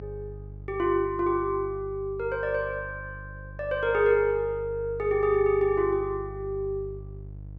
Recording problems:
electrical hum; 50 Hz, harmonics up to 500 Hz, SNR 15 dB

